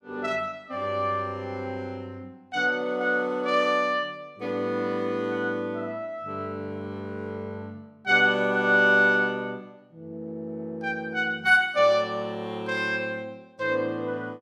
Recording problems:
none

